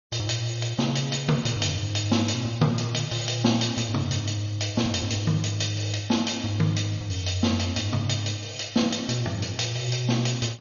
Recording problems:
lossy codec; MP2, then Vorbis, log-spectral distance 9 dB, nothing above 6.7 kHz

